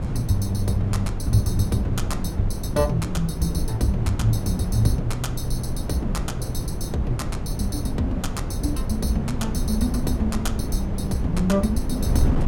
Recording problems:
hum; 50 Hz, harmonics up to 900 Hz, SNR 18 dB
wind on the microphone; below 180 Hz, SNR 3 dB

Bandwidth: 17 kHz